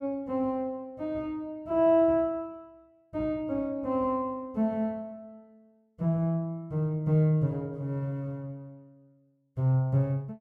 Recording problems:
none

